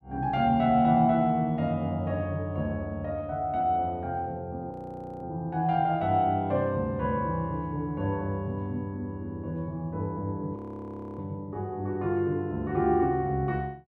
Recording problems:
frozen audio; at 4.5 s for 0.5 s and at 11 s for 0.5 s

